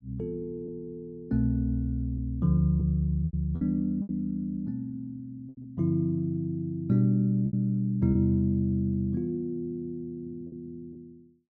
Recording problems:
lost packets; 5% of the sound replaced, filled with repeated pitch periods

